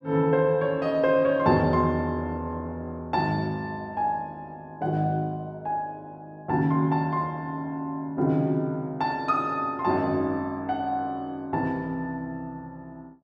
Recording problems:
none

